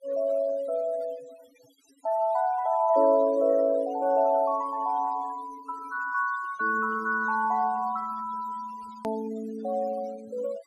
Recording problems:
noise reduction artefacts; signal-to-artefact ratio 21 dB
hard cut with a click; at 9 s

